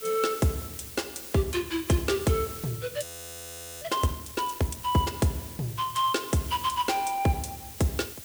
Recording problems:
background hiss; SNR 12 dB
audio freezing; at 3 s for 1 s

